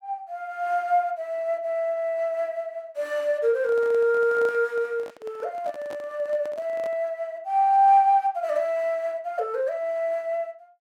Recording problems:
handling noise; from 3.5 to 7 s; peak -11 dB vs average level

